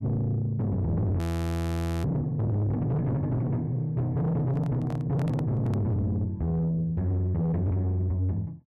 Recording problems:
distorted audio; soft clipping, signal-to-distortion ratio 8 dB
audio freezing; at 1 s for 1 s
handling noise; from 4.5 to 6 s; peak -7 dB vs average level

